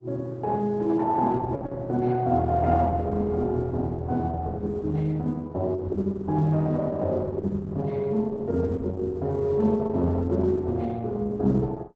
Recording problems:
codec artefacts; Opus, log-spectral distance 2 dB, nothing above 7.6 kHz

